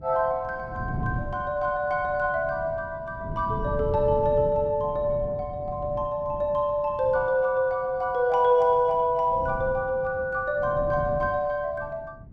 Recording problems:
wind on the microphone; below 180 Hz, SNR 12 dB

